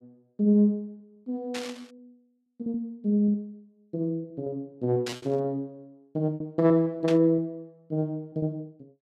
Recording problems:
lost packets; 9% of the sound replaced, filled with repeated pitch periods
static burst; at 1.5 s, at 5 s and at 7 s; peak -4 dB vs average level

